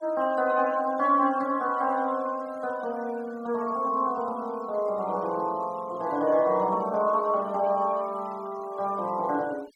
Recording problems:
denoising artefacts; signal-to-artefact ratio 25 dB

